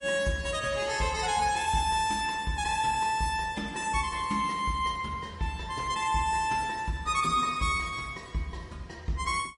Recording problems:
codec artefacts; AAC, then MP3, log-spectral distance 3 dB, nothing above 10.4 kHz

